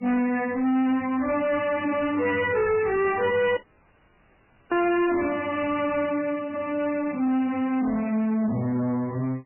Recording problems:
codec artefacts; MP3, log-spectral distance 5 dB, nothing above 2.7 kHz
distortion; soft clipping, signal-to-distortion ratio 7 dB
dropout; at 3.5 s for 1 s

